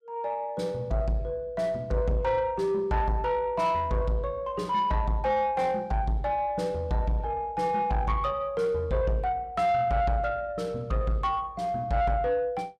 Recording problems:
distorted audio; soft clipping, signal-to-distortion ratio 12 dB

